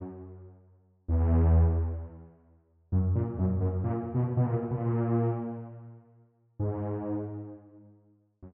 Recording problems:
treble cut off; nothing above 3.3 kHz

